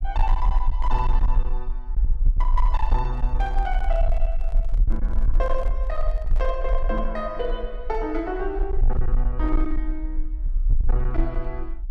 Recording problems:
distorted audio; hard clipping, uneven, signal-to-distortion ratio 10 dB
rumble; below 42 Hz, strongest tone 28 Hz, SNR -4 dB
handling noise; from 3 to 6.5 s; peak -10 dB vs average level

